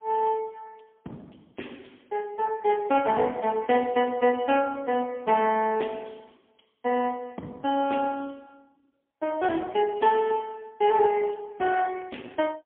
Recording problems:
telephone audio; 170 Hz to 3.3 kHz, AMR-NB, then MP3

